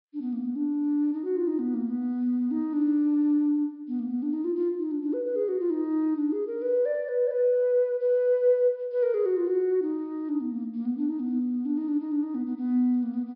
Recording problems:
low-pass filter; nothing above 5.2 kHz

